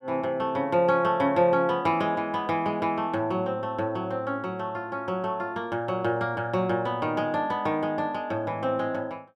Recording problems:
none

